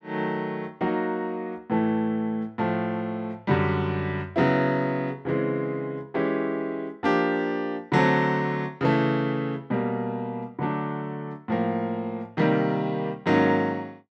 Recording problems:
none

